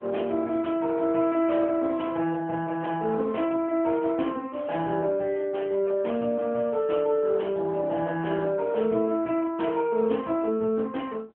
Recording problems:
phone line; 170 Hz to 3.2 kHz, AMR-NB

